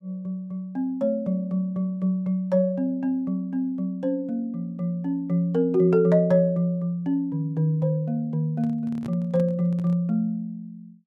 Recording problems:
microphone handling noise; from 8.5 to 10 s; peak -9 dB vs average level

